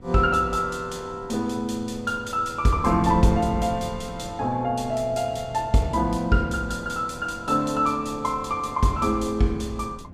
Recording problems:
wind noise; below 230 Hz, SNR 15 dB

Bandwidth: 14.5 kHz